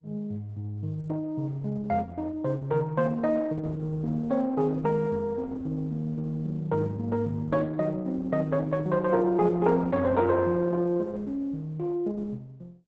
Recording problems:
codec artefacts; Opus, log-spectral distance 2 dB, nothing above 7.6 kHz

